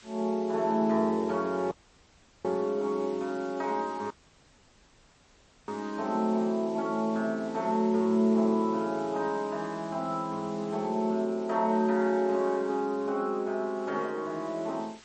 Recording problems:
lossy compression; MP3, log-spectral distance 5 dB, nothing above 7.8 kHz
hiss; SNR 24 dB
dropout; at 1.5 s for 0.5 s and at 4 s for 1.5 s

